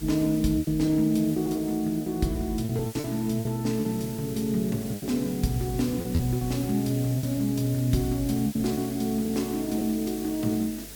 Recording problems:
hum; 50 Hz, harmonics up to 450 Hz, SNR 23 dB
background hiss; SNR 14 dB
packet loss; 8% of the sound replaced, filled with repeated pitch periods

